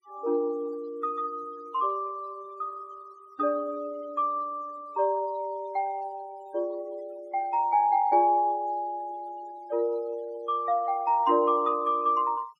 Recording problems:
noise reduction artefacts; signal-to-artefact ratio 26 dB

